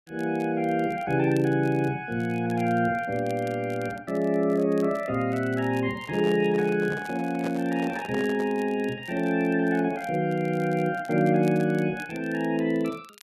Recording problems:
crackle; vinyl, SNR 27 dB
microphone handling noise; from 6 to 8.5 s; peak -5 dB vs average level

